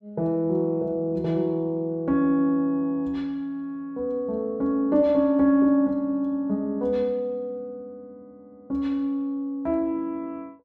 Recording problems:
none

